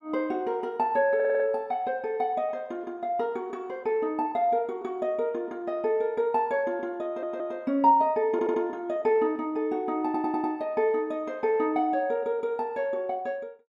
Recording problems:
stutter; 4 times, first at 1 s

